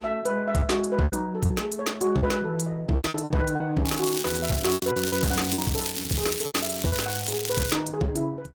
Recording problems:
codec artefacts; Opus, log-spectral distance 5 dB, nothing above 19 kHz
distorted audio; hard clipping, signal-to-distortion ratio 12 dB
packet loss; 10% of the sound replaced, filled with repeated pitch periods
crackle; from 4 to 7.5 s; loose cable, SNR 4 dB

